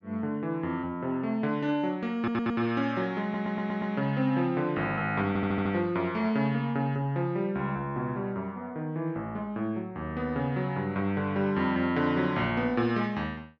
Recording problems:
audio stuttering; at 2 s, at 3 s and at 5.5 s

